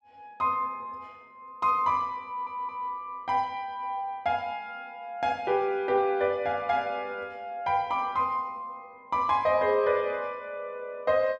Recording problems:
stutter; at 2.5 s

